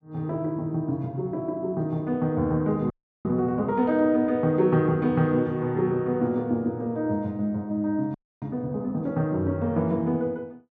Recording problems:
frozen audio; at 3 s and at 8 s

